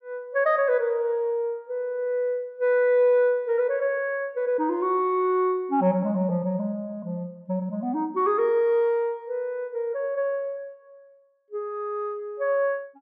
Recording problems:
none

